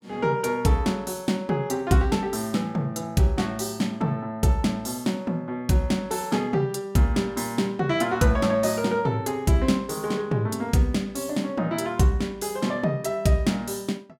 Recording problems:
none

